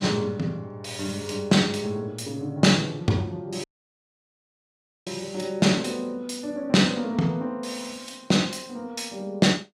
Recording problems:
dropout; at 3.5 s for 1.5 s

